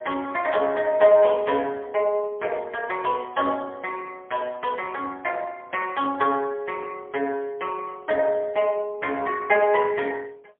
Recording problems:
telephone audio; 320 Hz to 3 kHz, AMR-NB, then MP3

